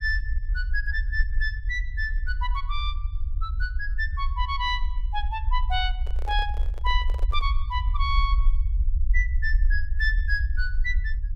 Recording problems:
low-frequency rumble; below 56 Hz, SNR -2 dB
microphone handling noise; from 6 to 7.5 s; peak -9 dB vs average level

